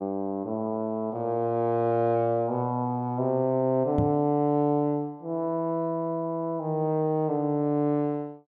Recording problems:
microphone thump; at 4 s; peak +3 dB vs average level

